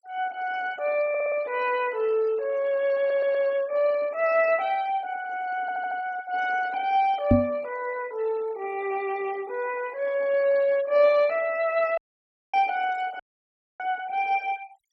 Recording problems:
denoising artefacts; signal-to-artefact ratio 23 dB
stutter; at 1 s, at 3 s and at 5.5 s
microphone bump; at 7.5 s; peak +9 dB vs average level
audio cutting out; at 12 s for 0.5 s and at 13 s for 0.5 s

